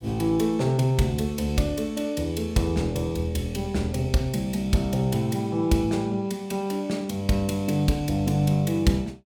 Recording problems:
none

